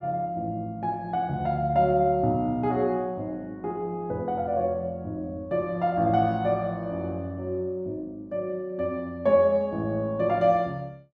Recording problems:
none

